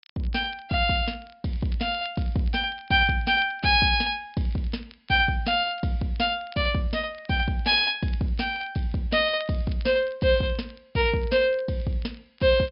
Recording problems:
low-pass filter; nothing above 5.5 kHz
crackling; vinyl, SNR 27 dB

